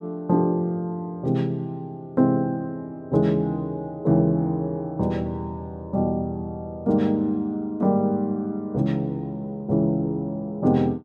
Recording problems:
none

